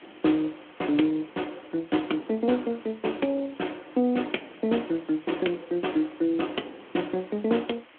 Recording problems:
phone line; 220 Hz to 3.3 kHz, Speex
hiss; SNR 23 dB

